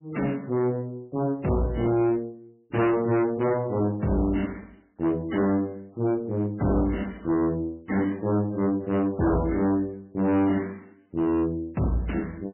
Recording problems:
lossy compression; MP3, log-spectral distance 3 dB, nothing above 2.4 kHz
distorted audio; hard clipping, uneven, signal-to-distortion ratio 7 dB

